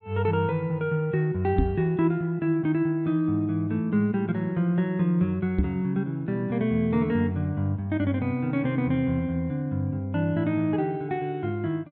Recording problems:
low-pass filter; nothing above 4.2 kHz
microphone bump; at 1.5 s and at 5.5 s; peak +5 dB vs average level

